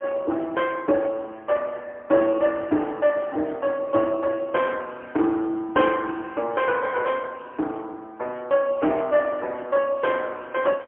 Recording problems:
telephone audio; 260 Hz to 3.3 kHz, AMR-NB, then MP3

